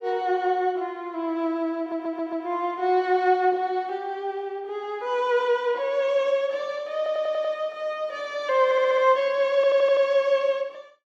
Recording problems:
stutter; 4 times, first at 2 s

